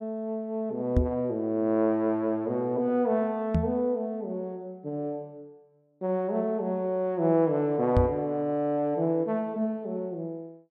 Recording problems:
microphone thump; at 1 s, at 3.5 s and at 8 s; peak +7 dB vs average level

